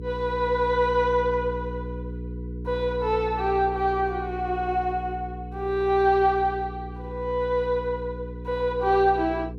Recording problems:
hum; 60 Hz, harmonics up to 480 Hz, SNR 11 dB

